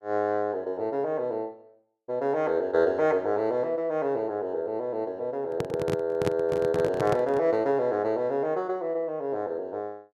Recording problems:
handling noise; from 5.5 to 7.5 s; peak +2 dB vs average level

